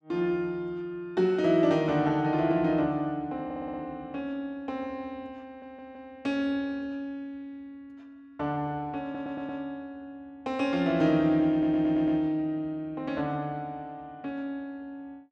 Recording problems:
audio stuttering; 4 times, first at 3.5 s

